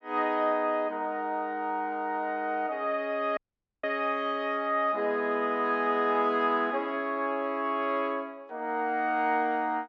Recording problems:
audio cutting out; at 3.5 s

